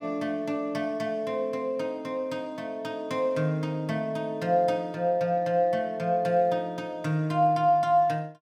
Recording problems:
none

